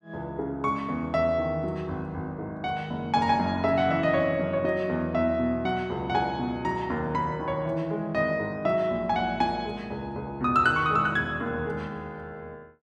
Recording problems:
none

